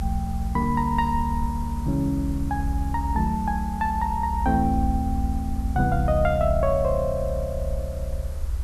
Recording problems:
background hiss; slope -4 dB per octave, SNR 21 dB
low-frequency rumble; below 74 Hz, strongest tone 56 Hz, SNR 4 dB

